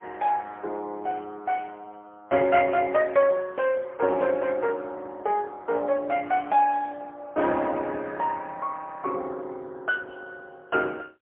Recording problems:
telephone audio; 320 Hz to 2.8 kHz, AMR-NB, then MP3

